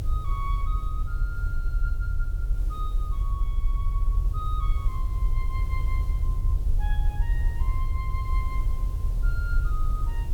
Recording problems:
hiss; SNR 9 dB
low-frequency rumble; below 60 Hz, SNR -12 dB

